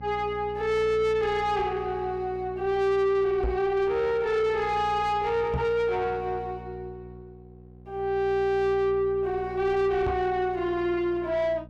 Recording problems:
distorted audio; soft clipping, signal-to-distortion ratio 10 dB
hum; 60 Hz, harmonics up to 780 Hz, SNR 18 dB
microphone thump; at 3.5 s, at 5.5 s and at 10 s; peak 0 dB vs average level

